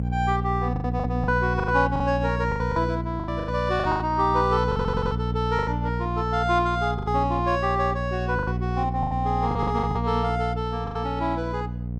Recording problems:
hum; 60 Hz, harmonics up to 540 Hz, SNR 3 dB
lost packets; 11% of the sound replaced, filled with the last packet
stutter; at 4.5 s

